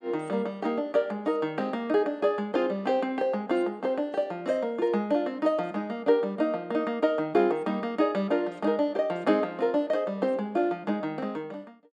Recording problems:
none

